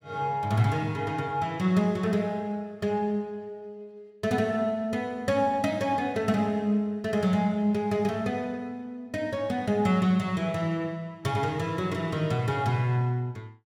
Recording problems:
none

